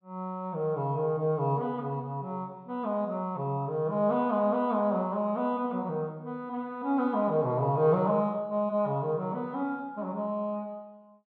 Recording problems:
none

